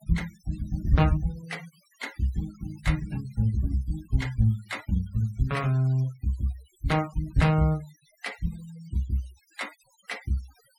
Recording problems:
noise reduction artefacts; signal-to-artefact ratio 21 dB

